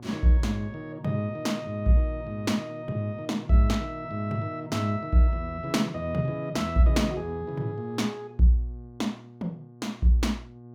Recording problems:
hum; 60 Hz, harmonics up to 1.1 kHz, SNR 20 dB

